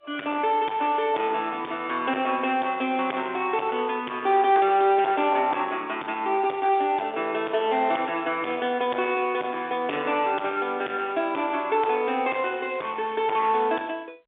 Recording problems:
phone line; 280 Hz to 3.7 kHz, G.711
distorted audio; soft clipping, signal-to-distortion ratio 11 dB
crackling; at 12 s; loose cable, SNR 26 dB

